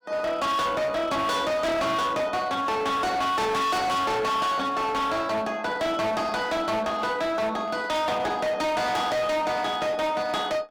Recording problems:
distorted audio; hard clipping, signal-to-distortion ratio 7 dB

